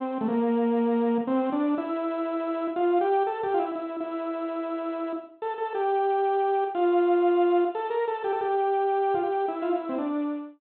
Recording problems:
treble cut off; nothing above 4 kHz

